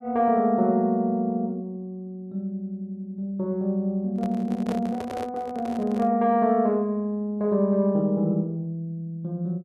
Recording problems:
microphone handling noise; from 4 to 6 s; peak -5 dB vs average level

